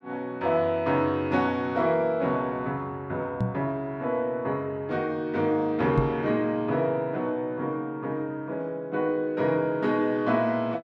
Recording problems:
microphone thump; at 3.5 s and at 6 s; peak +6 dB vs average level

